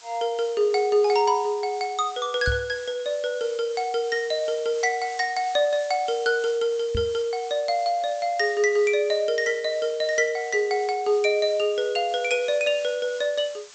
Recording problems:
treble cut off; nothing above 8 kHz
background hiss; slope +3 dB per octave, SNR 20 dB
knock on the microphone; at 2.5 s and at 7 s; peak -1 dB vs average level

